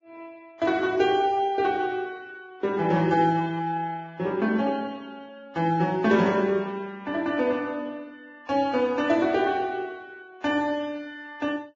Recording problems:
lossy compression; Vorbis, log-spectral distance 2 dB

